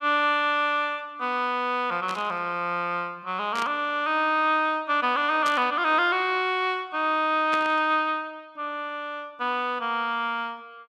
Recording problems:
burst of static; 4 times, first at 2 s; peak -5 dB vs average level

